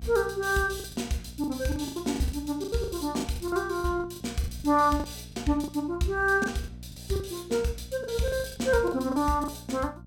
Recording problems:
electrical hum; 60 Hz, harmonics up to 600 Hz, SNR 18 dB
lost packets; 13% of the sound replaced, filled with the last packet

